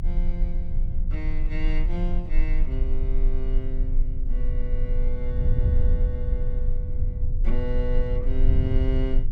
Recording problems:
low-frequency rumble; below 30 Hz, strongest tone 24 Hz, SNR -4 dB
wind on the microphone; below 82 Hz, SNR -6 dB

